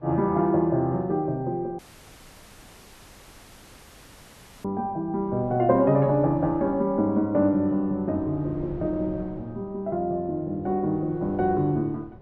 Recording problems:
wind noise; below 420 Hz, SNR 19 dB
audio cutting out; at 2 s for 3 s

